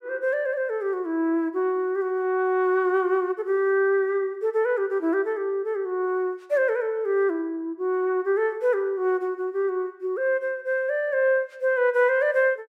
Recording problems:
none

